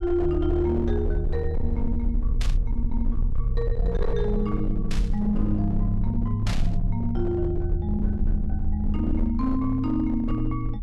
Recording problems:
distortion; hard clipping, signal-to-distortion ratio 10 dB
rumble; below 48 Hz, SNR 4 dB
burst of static; at 2.5 s, at 5 s and at 6.5 s; peak -3 dB vs average level

